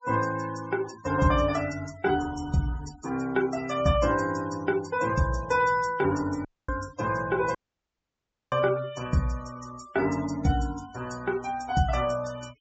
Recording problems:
treble cut off; nothing above 8 kHz
denoising artefacts; signal-to-artefact ratio 16 dB
dropout; at 6.5 s and at 7.5 s for 1 s

